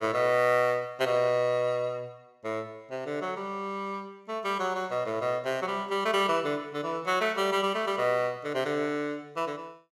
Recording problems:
none

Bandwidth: 15.5 kHz